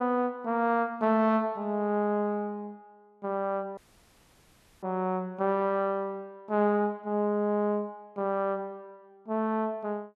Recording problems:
audio cutting out; at 4 s for 1 s

